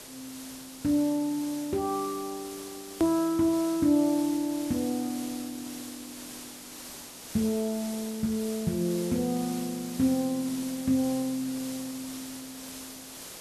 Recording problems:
hiss; SNR 12 dB
click at an edit; at 3 s

